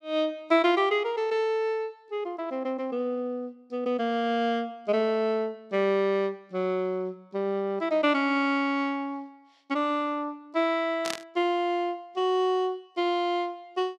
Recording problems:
static burst; at 11 s; peak 0 dB vs average level

